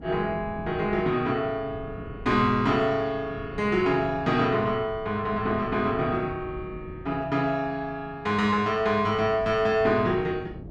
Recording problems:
wind noise; below 270 Hz, SNR 16 dB

